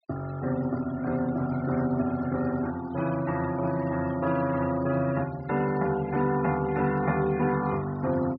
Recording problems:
low-pass filter; nothing above 5.5 kHz
denoising artefacts; signal-to-artefact ratio 17 dB

